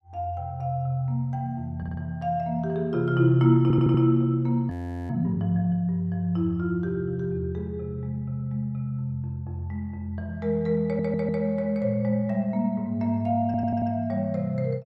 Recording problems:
audio stuttering; 4 times, first at 2 s
frozen audio; at 4.5 s

